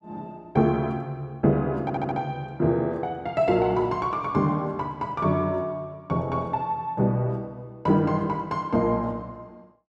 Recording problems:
audio stuttering; at 2 s

